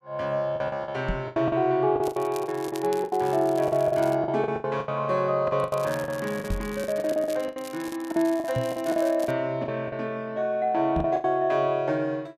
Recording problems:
lost packets; 14% of the sound replaced, filled with the last packet
microphone bump; 4 times, first at 1 s; peak -1 dB vs average level
crackle; from 2 to 4 s and from 5.5 to 9.5 s; loose cable, SNR 19 dB

